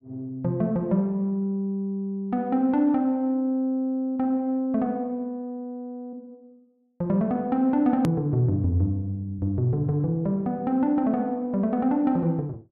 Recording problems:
hard cut with a click; at 8 s

